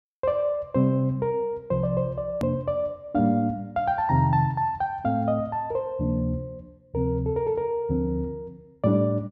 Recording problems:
edit click; at 2.5 s

